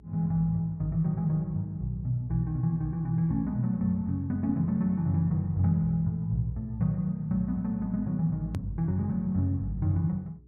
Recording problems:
mains hum; 60 Hz, harmonics up to 420 Hz, SNR 26 dB
hard cut with a click; at 8.5 s

